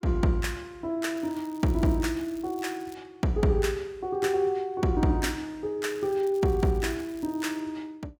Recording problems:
crackling; from 1 to 3 s and from 6 to 7.5 s; loose cable, SNR 25 dB

